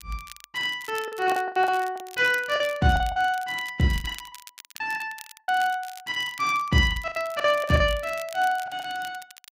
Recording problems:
crackle; vinyl, SNR 19 dB
lost packets; 14% of the sound replaced, filled with the last packet

